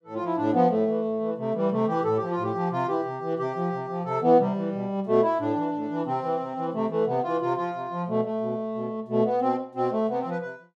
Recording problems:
none

